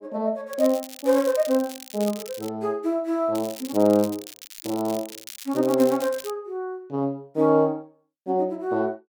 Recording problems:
crackling; from 0.5 to 2.5 s and from 3.5 to 6.5 s; loose cable, SNR 15 dB

